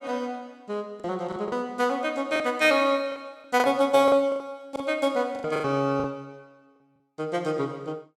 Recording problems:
packet loss; 9% of the sound replaced, filled with the last packet

